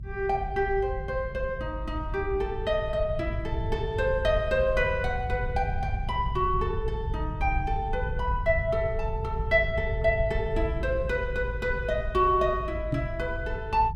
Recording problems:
rumble; below 98 Hz, SNR 6 dB
microphone thump; at 13 s; peak +4 dB vs average level

